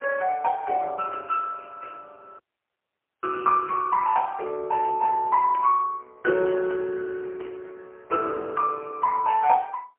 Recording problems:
telephone audio; 300 Hz to 2.3 kHz, AMR-NB, then MP3
audio cutting out; at 2.5 s for 1 s

